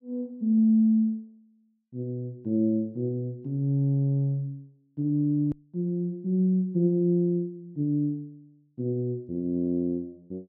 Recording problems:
edit click; at 5.5 s

